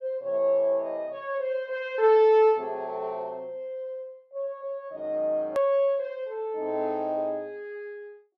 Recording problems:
click at an edit; at 5.5 s

